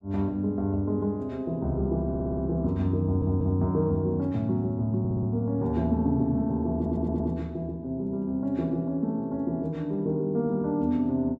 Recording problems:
audio stuttering; 4 times, first at 2 s

